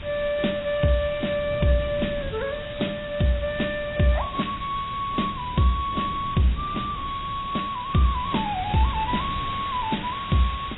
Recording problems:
lossy compression; AAC, log-spectral distance 17 dB, nothing above 3.8 kHz
hiss; SNR 14 dB
wind noise; below 190 Hz, SNR 14 dB

